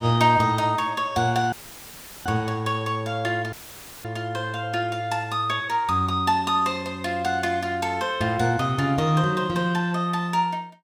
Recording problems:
audio cutting out; at 1.5 s for 0.5 s and at 3.5 s for 0.5 s; filled with static

